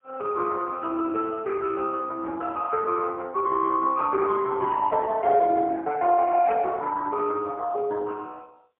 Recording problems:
telephone audio; 340 Hz to 2.2 kHz, AMR-NB, then MP3

